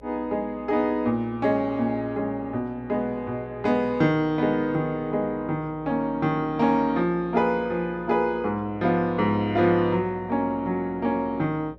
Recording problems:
hum; 60 Hz, harmonics up to 600 Hz, SNR 24 dB

